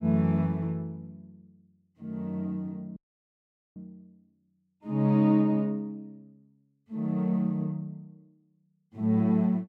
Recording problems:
audio cutting out; at 3 s for 1 s

